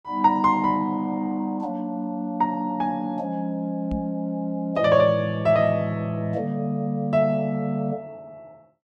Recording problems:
microphone bump; at 4 s; peak -3 dB vs average level

